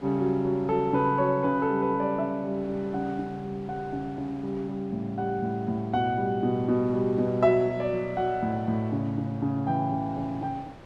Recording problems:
wind noise; below 990 Hz, SNR 20 dB

